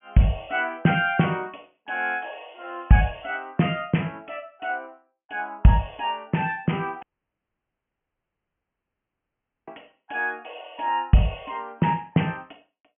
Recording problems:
low-pass filter; nothing above 3.1 kHz
audio cutting out; at 7 s for 2.5 s

